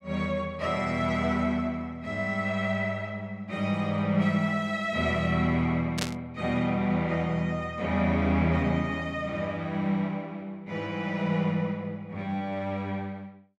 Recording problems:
static burst; at 6 s; peak +3 dB vs average level

